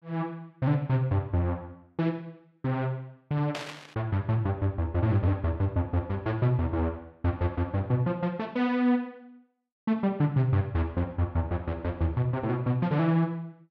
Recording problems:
static burst; at 3.5 s; peak -4 dB vs average level

